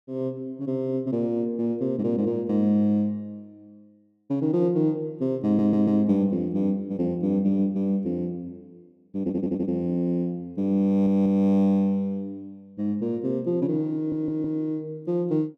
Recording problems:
audio stuttering; 4 times, first at 5.5 s

